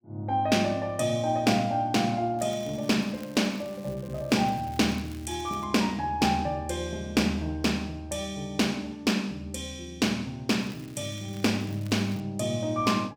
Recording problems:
crackling; from 2.5 to 5.5 s and from 11 to 12 s; loose cable, SNR 23 dB

